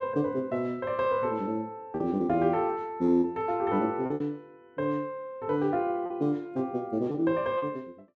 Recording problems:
packet loss; 4% of the sound replaced, filled with repeated pitch periods

